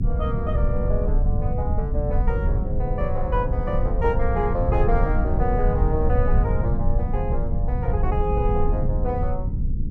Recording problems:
hum; 50 Hz, harmonics up to 500 Hz, SNR 22 dB
low-frequency rumble; below 94 Hz, SNR -3 dB

